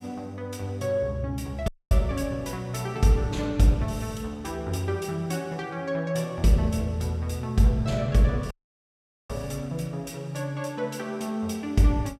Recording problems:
dropout; at 1.5 s and at 8.5 s for 1 s

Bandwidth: 16 kHz